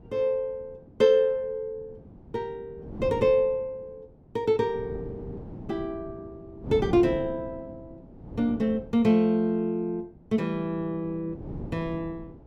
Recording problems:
wind on the microphone; below 310 Hz, SNR 13 dB

